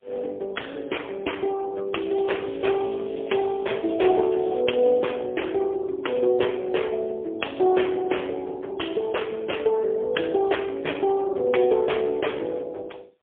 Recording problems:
phone line; 300 Hz to 3.3 kHz, AMR-NB, then MP3
crackle; from 2 to 4.5 s; loose cable, SNR 23 dB

